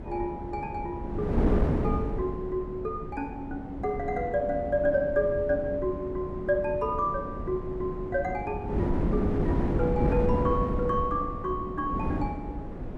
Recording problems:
wind noise; below 320 Hz, SNR 2 dB

